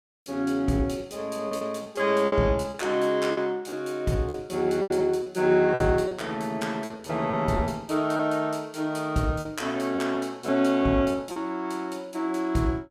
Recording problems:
lost packets; 8% of the sound replaced, filled with repeated pitch periods

